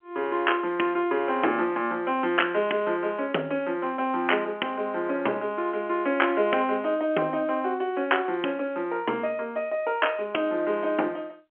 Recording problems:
phone line; 220 Hz to 3.2 kHz, G.711

